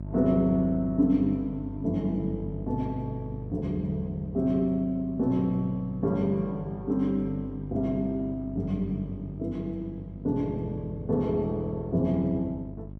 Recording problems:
electrical hum; 50 Hz, harmonics up to 650 Hz, SNR 11 dB

